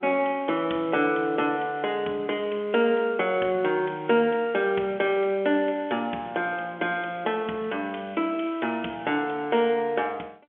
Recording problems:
phone line; 220 Hz to 3.4 kHz, G.711

